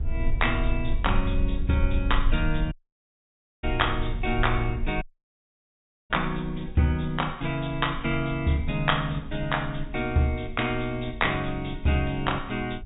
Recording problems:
treble cut off; nothing above 4 kHz
rumble; below 52 Hz, strongest tone 20 Hz, SNR 7 dB
dropout; at 2.5 s for 1 s and at 5 s for 1 s

